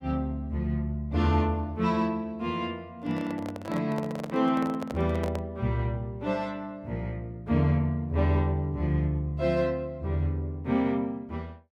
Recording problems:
microphone handling noise; from 3 to 5.5 s; peak -3 dB vs average level

